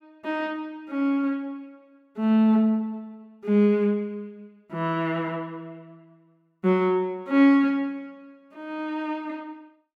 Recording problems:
none

